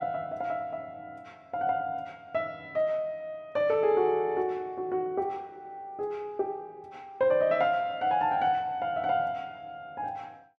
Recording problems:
none

